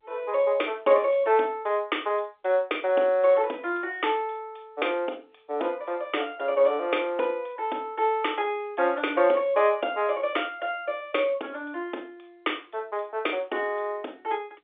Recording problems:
telephone audio; 260 Hz to 3.6 kHz, G.711

